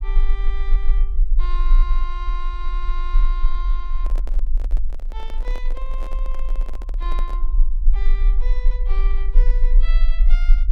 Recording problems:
rumble; below 36 Hz, strongest tone 22 Hz, SNR -14 dB
handling noise; from 4 to 7.5 s; peak +3 dB vs average level

